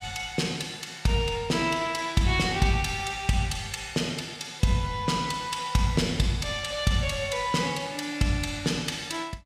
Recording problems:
none

